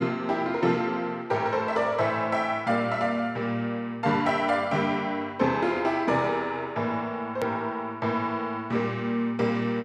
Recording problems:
edit click; at 7.5 s

